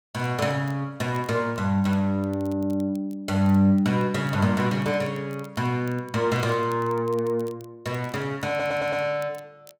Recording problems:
crackling; vinyl, SNR 29 dB
audio stuttering; at 8.5 s

